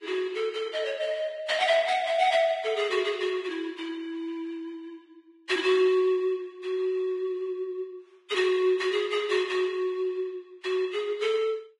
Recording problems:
lossy compression; Vorbis, log-spectral distance 2 dB, nothing above 10.7 kHz

